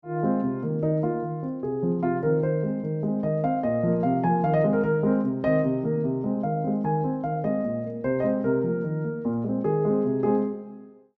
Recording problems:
treble cut off; nothing above 8 kHz

